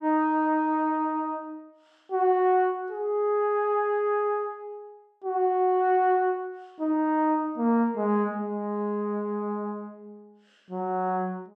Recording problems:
none

